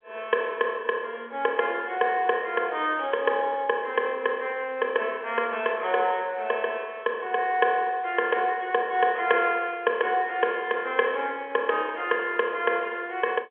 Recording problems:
telephone audio; 280 Hz to 3.5 kHz, G.711

